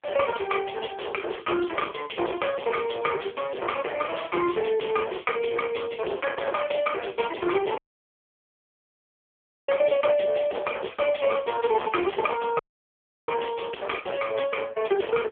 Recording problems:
telephone audio; 320 Hz to 3.3 kHz, AMR-NB
distortion; hard clipping, uneven, signal-to-distortion ratio 7 dB
dropout; at 8 s for 2 s and at 13 s for 0.5 s

